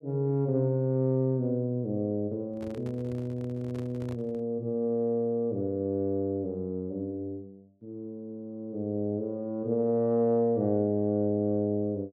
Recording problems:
microphone handling noise; from 2.5 to 4.5 s; peak -11 dB vs average level

